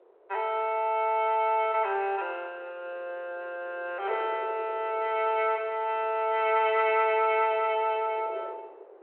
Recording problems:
telephone audio; 340 Hz to 3.3 kHz, G.726
wind on the microphone; below 630 Hz, SNR 20 dB

